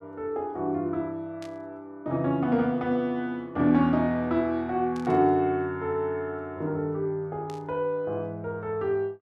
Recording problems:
static burst; at 1.5 s, at 5 s and at 7.5 s; peak -15 dB vs average level

